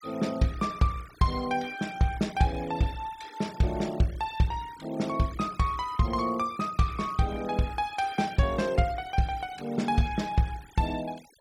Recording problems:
noise reduction artefacts; signal-to-artefact ratio 20 dB

